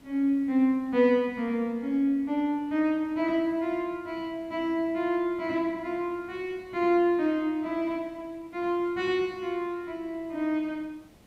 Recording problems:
hiss; slope -5 dB per octave, SNR 29 dB

